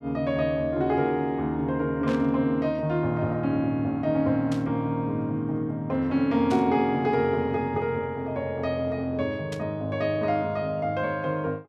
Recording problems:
static burst; 4 times, first at 2 s; peak -9 dB vs average level

